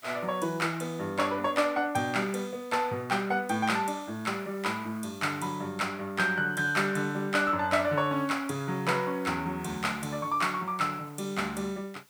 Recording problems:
background hiss; slope 0 dB per octave, SNR 26 dB

